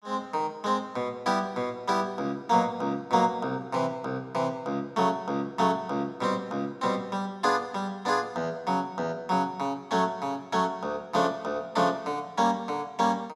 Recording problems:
none

